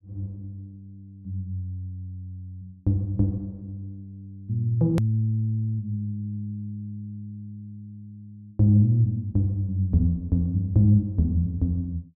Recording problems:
hard cut with a click; at 5 s

